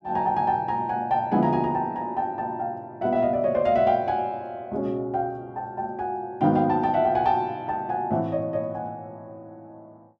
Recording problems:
none

